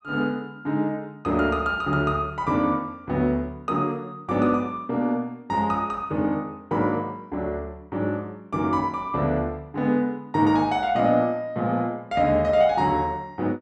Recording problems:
none

